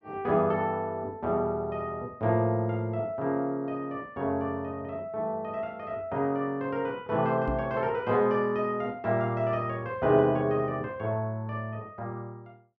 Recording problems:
microphone thump; at 7.5 s; peak -2 dB vs average level

